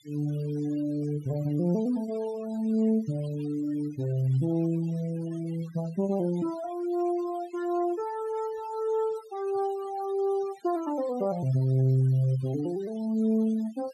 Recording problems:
denoising artefacts; signal-to-artefact ratio 22 dB

